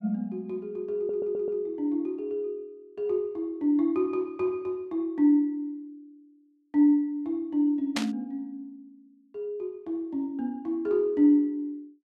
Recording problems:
stutter; at 1 s
burst of static; at 8 s; peak +2 dB vs average level

